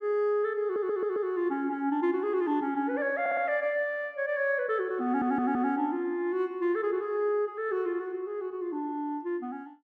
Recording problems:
audio stuttering; at 0.5 s, at 3 s and at 5 s

